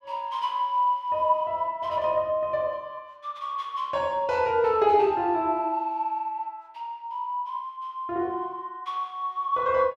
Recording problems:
none

